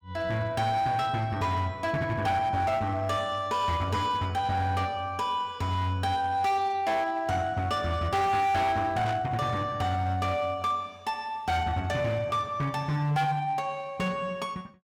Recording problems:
distortion; hard clipping, signal-to-distortion ratio 11 dB
burst of static; at 9 s; peak -6 dB vs average level

